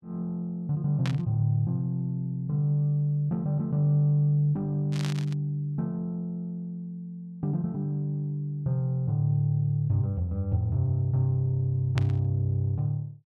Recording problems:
static burst; at 1 s, at 5 s and at 12 s; peak -4 dB vs average level

